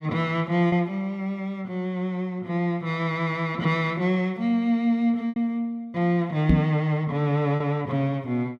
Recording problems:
packet loss; 1.9% of the sound replaced, filled with repeated pitch periods
microphone bump; at 6.5 s; peak +8 dB vs average level

